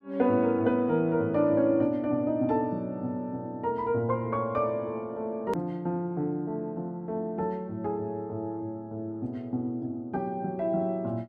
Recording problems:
click at an edit; at 5.5 s

